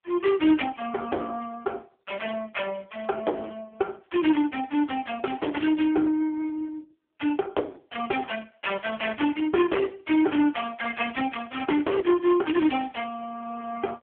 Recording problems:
phone line; 260 Hz to 3.4 kHz, AMR-NB
distortion; hard clipping, uneven, signal-to-distortion ratio 14 dB

